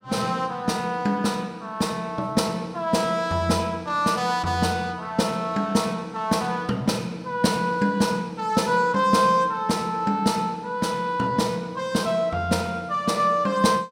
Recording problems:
none

